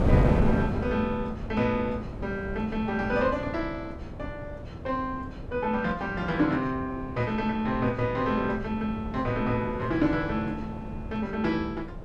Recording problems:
wind on the microphone; below 310 Hz, SNR 6 dB

